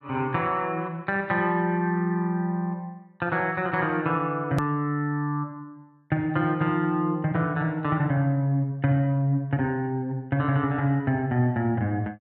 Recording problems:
hard cut with a click; at 4.5 s

